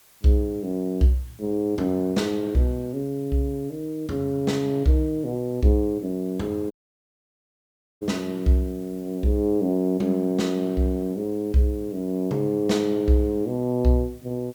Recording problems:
hiss; slope -1 dB per octave, SNR 27 dB
dropout; at 6.5 s for 1.5 s

